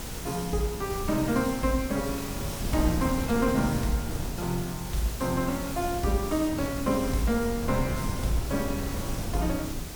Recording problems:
hum; 50 Hz, harmonics up to 350 Hz, SNR 21 dB
background hiss; slope -2 dB per octave, SNR 10 dB
wind noise; below 220 Hz, SNR 7 dB

